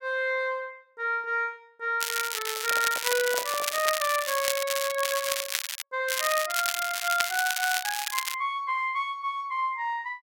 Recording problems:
crackling; from 2 to 6 s and from 6 to 8.5 s; loose cable, SNR 1 dB
handling noise; from 2.5 to 4 s; peak -5 dB vs average level

